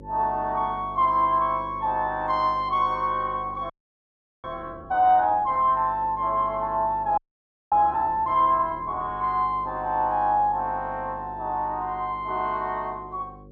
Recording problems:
hum; 50 Hz, harmonics up to 550 Hz, SNR 20 dB
frozen audio; at 3.5 s for 0.5 s and at 7 s for 0.5 s

